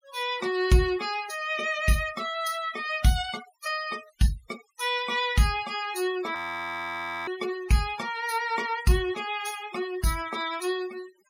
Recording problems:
denoising artefacts; signal-to-artefact ratio 15 dB
audio freezing; at 6.5 s for 1 s

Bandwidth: 16 kHz